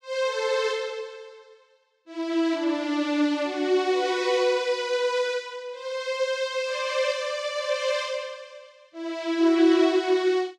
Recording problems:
none

